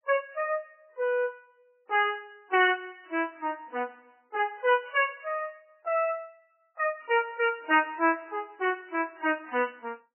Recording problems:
codec artefacts; MP3, log-spectral distance 3 dB, nothing above 2.4 kHz

